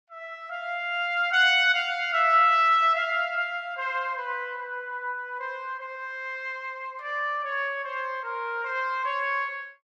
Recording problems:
none

